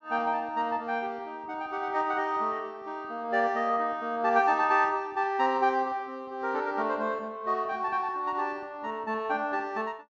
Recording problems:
low-pass filter; nothing above 8 kHz

